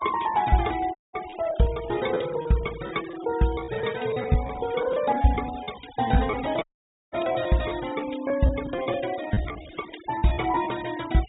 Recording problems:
treble missing; nothing above 4 kHz
noise reduction artefacts; signal-to-artefact ratio 15 dB
packet loss; 12% of the sound replaced, filled with repeated pitch periods
dropout; at 1 s and at 6.5 s

